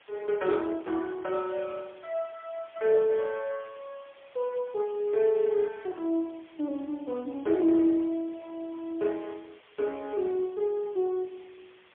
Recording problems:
phone line; 280 Hz to 3.4 kHz, AMR-NB, then MP3
hiss; SNR 27 dB

